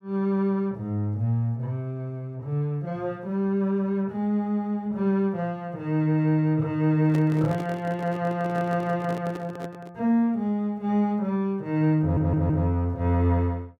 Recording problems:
microphone handling noise; from 7 to 10 s; peak -5 dB vs average level
stutter; at 12 s

